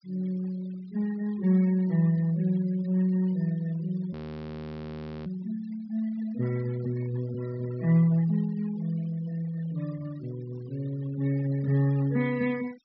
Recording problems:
treble missing; nothing above 5.5 kHz
denoising artefacts; signal-to-artefact ratio 21 dB
audio freezing; at 4 s for 1 s

